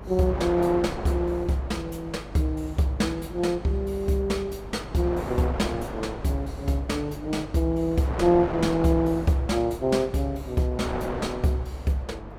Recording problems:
hum; 50 Hz, harmonics up to 550 Hz, SNR 18 dB
wind on the microphone; below 930 Hz, SNR 11 dB

